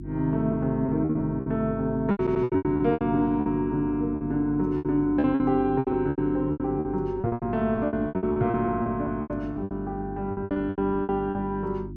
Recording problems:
hum; 50 Hz, harmonics up to 350 Hz, SNR 12 dB
lost packets; 18% of the sound replaced, filled with repeated pitch periods
stutter; at 2 s

